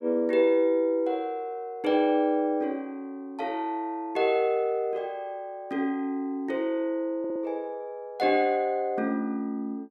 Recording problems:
audio stuttering; at 7 s

